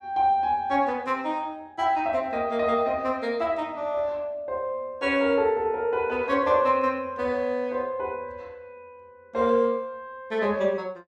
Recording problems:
none

